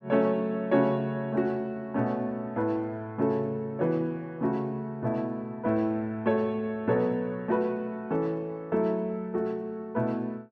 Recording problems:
none

